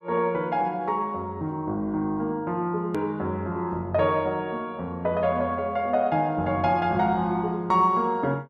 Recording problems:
edit click; at 3 s

